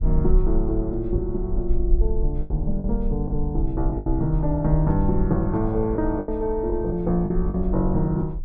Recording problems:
low-frequency rumble; below 52 Hz, strongest tone 20 Hz, SNR 4 dB
packet loss; 6% of the sound replaced, filled with the last packet

